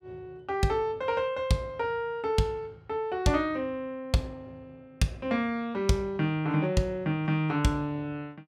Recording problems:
none

